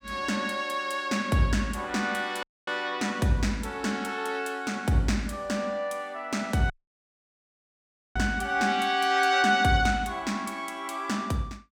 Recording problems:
audio cutting out; at 2.5 s and at 6.5 s for 1.5 s

